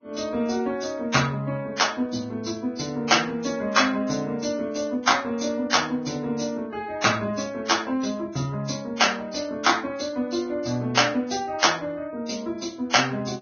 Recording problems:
lossy codec; Vorbis, log-spectral distance 5 dB, nothing above 6.5 kHz

